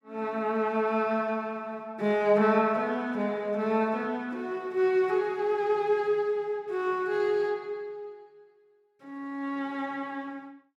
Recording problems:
none

